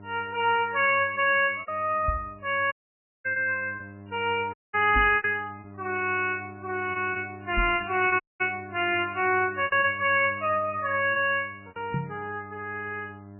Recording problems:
codec artefacts; MP3, log-spectral distance 3 dB, nothing above 2.6 kHz
electrical hum; 50 Hz, harmonics up to 1.4 kHz, SNR 20 dB
lost packets; 6% of the sound replaced, filled with repeated pitch periods
microphone thump; 4 times, first at 2 s; peak 0 dB vs average level
audio cutting out; at 2.5 s for 0.5 s, at 4.5 s and at 8 s

